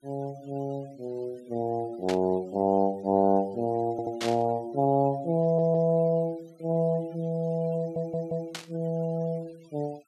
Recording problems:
denoising artefacts; signal-to-artefact ratio 27 dB
static burst; at 2 s, at 4 s and at 8.5 s; peak -2 dB vs average level
audio stuttering; at 4 s, at 5.5 s and at 8 s

